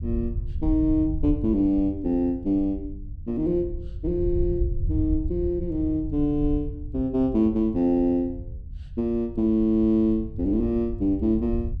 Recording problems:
rumble; below 86 Hz, SNR 9 dB

